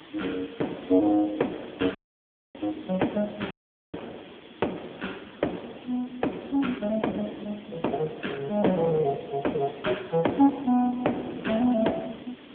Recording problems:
phone line; 170 Hz to 3.5 kHz, AMR-NB
background hiss; SNR 22 dB
wind on the microphone; below 450 Hz, SNR 17 dB
dropout; at 2 s for 0.5 s and at 3.5 s

